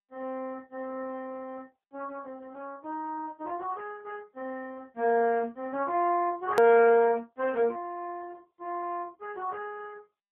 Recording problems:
telephone audio; 280 Hz to 3.3 kHz, AMR-NB
click at an edit; at 6.5 s

